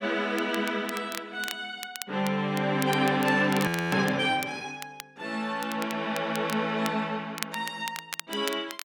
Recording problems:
crackling; vinyl, SNR 12 dB
frozen audio; at 3.5 s

